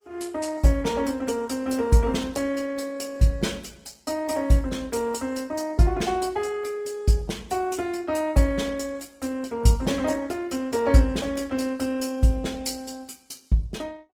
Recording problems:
lossy compression; Opus, log-spectral distance 4 dB, nothing above 19 kHz

